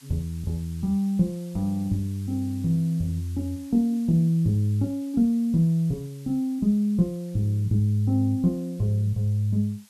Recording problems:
background hiss; SNR 27 dB

